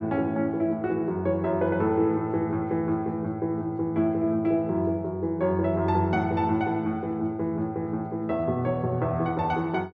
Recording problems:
none

